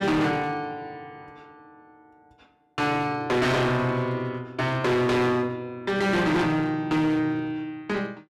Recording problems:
distortion; hard clipping, uneven, signal-to-distortion ratio 7 dB

